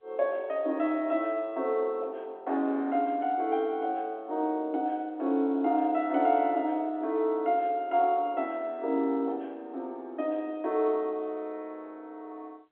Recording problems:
telephone audio; 240 Hz to 3.7 kHz, G.711

